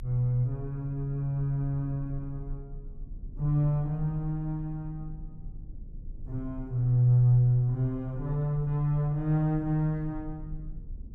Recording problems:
low-frequency rumble; below 44 Hz, strongest tone 24 Hz, SNR 17 dB

